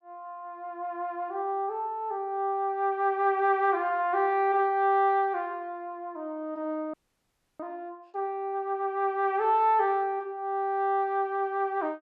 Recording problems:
frozen audio; at 7 s for 0.5 s

